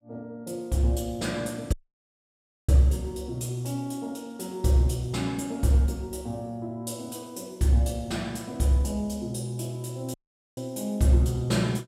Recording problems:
audio cutting out; at 1.5 s for 1 s and at 10 s

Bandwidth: 16.5 kHz